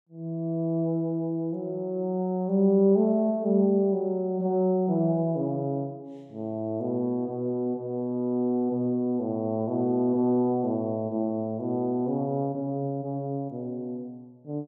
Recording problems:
none

